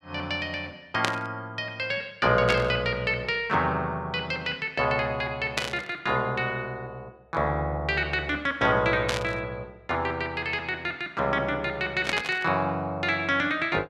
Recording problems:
burst of static; 5 times, first at 1 s; peak +5 dB vs average level

